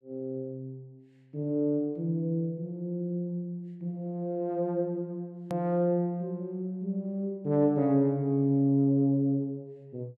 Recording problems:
edit click; at 5.5 s

